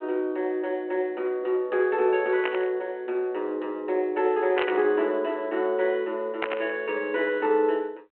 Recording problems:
telephone audio; 260 Hz to 3.3 kHz, G.726
burst of static; at 2.5 s, at 4.5 s and at 6.5 s; peak +2 dB vs average level

